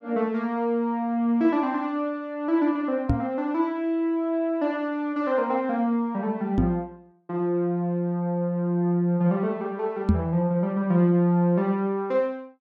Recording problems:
knock on the microphone; at 3 s, at 6.5 s and at 10 s; peak +7 dB vs average level

